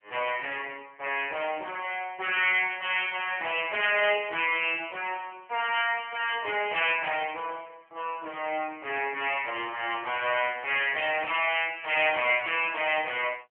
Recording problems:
phone line; 260 Hz to 3.2 kHz, AMR-NB

